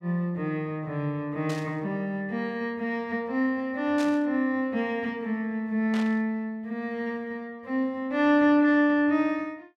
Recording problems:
static burst; at 1.5 s, at 4 s and at 6 s; peak -8 dB vs average level

